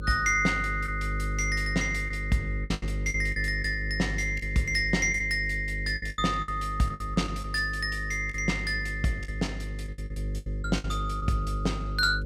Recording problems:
electrical hum; 50 Hz, harmonics up to 550 Hz, SNR 6 dB
packet loss; 9% of the sound replaced, filled with the last packet

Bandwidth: 18 kHz